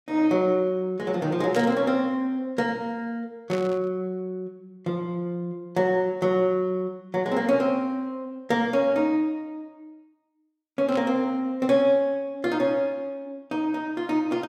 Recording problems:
burst of static; at 1.5 s, at 3.5 s and at 11 s; peak -7 dB vs average level

